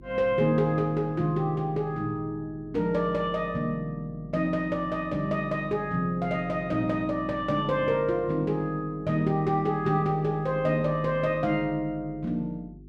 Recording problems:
electrical hum; 50 Hz, harmonics up to 400 Hz, SNR 21 dB

